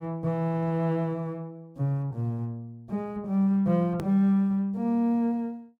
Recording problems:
edit click; at 4 s

